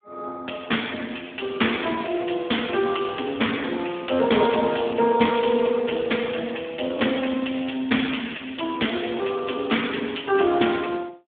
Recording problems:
telephone audio; 220 Hz to 3.6 kHz, Speex

